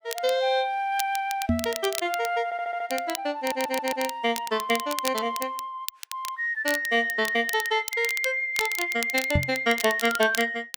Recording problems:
crackling; vinyl, SNR 10 dB
knock on the microphone; at 1.5 s and at 9.5 s; peak +5 dB vs average level
stutter; at 2.5 s and at 3.5 s

